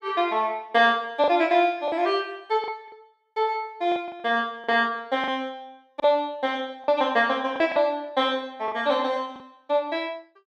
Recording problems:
lost packets; 6% of the sound replaced, filled with the last packet

